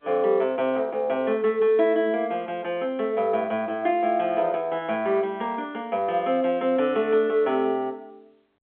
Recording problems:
phone line; 300 Hz to 3.5 kHz, G.711

